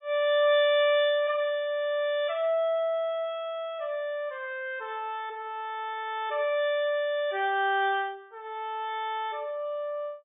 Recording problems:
treble cut off; nothing above 4 kHz

